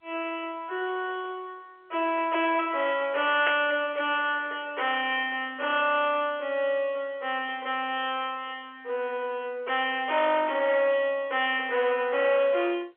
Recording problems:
phone line; 340 Hz to 3.4 kHz, G.711
distorted audio; soft clipping, signal-to-distortion ratio 13 dB
static burst; at 3.5 s; peak +1 dB vs average level

